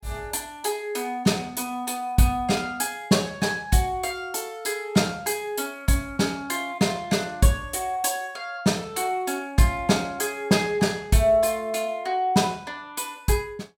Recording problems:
none

